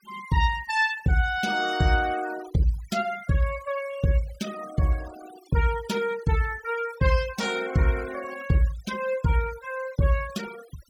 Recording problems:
denoising artefacts; signal-to-artefact ratio 16 dB

